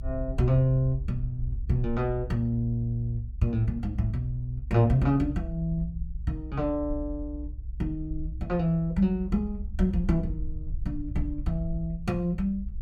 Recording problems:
rumble; below 64 Hz, SNR 9 dB

